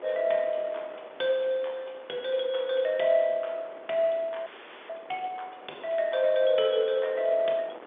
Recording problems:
telephone audio; 280 Hz to 3.6 kHz, G.711
wind noise; below 1.3 kHz, SNR 20 dB
frozen audio; at 4.5 s

